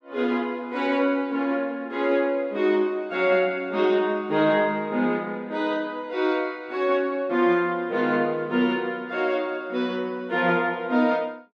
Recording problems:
none

